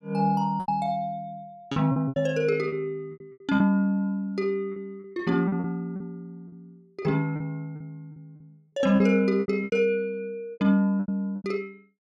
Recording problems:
packet loss; 12% of the sound replaced, filled with repeated pitch periods

